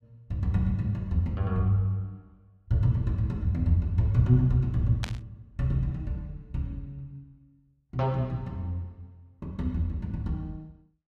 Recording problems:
burst of static; at 5 s; peak -3 dB vs average level

